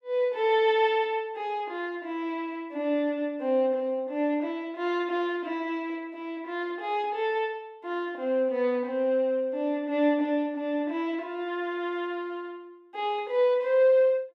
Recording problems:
none

